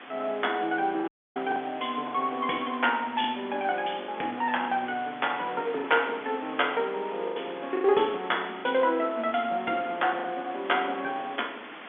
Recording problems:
telephone audio; 220 Hz to 3.5 kHz, G.711
hiss; SNR 15 dB
wind on the microphone; below 1.3 kHz, SNR 22 dB
lost packets; 5% of the sound replaced, filled with the last packet
dropout; at 1 s

